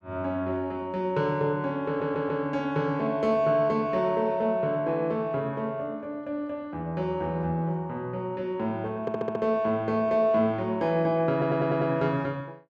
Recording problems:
audio stuttering; at 2 s, at 9 s and at 11 s

